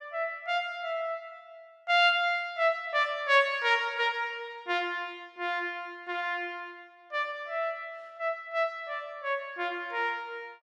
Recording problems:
none

